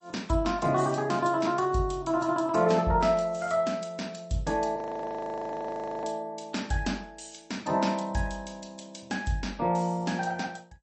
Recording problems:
lossy codec; MP3, then MP2, log-spectral distance 4 dB, nothing above 8.2 kHz
frozen audio; at 5 s for 1.5 s

